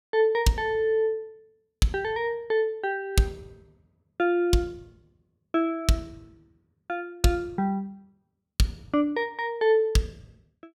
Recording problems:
none

